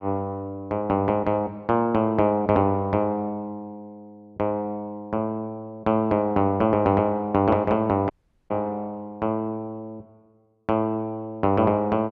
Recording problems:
audio cutting out; at 8 s

